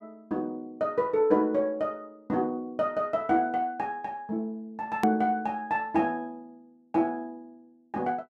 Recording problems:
click at an edit; at 5 s

